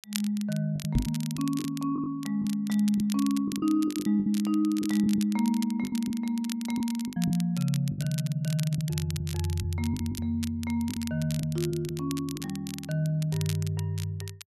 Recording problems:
crackling; vinyl, SNR 13 dB
lost packets; 9% of the sound replaced, filled with the last packet
microphone thump; at 1 s; peak +5 dB vs average level

